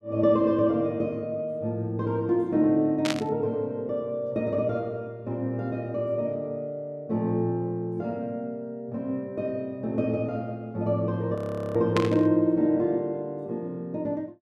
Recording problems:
static burst; at 3 s and at 12 s; peak +2 dB vs average level
frozen audio; at 11 s

